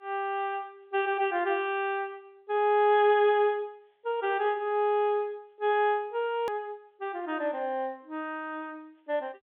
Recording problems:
telephone audio; 280 Hz to 3.7 kHz, G.711
edit click; at 6.5 s

